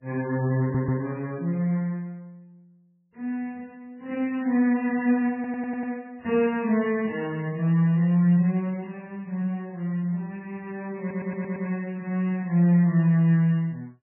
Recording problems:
codec artefacts; MP3, log-spectral distance 2 dB, nothing above 2.8 kHz
audio stuttering; at 0.5 s, at 5.5 s and at 11 s

